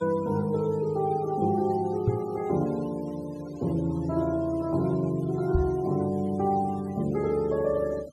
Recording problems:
noise reduction artefacts; signal-to-artefact ratio 22 dB
microphone bump; at 2 s and at 5.5 s; peak +6 dB vs average level

